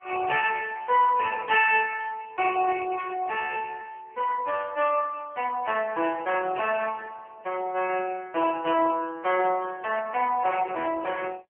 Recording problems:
phone line; 260 Hz to 3.1 kHz, AMR-NB

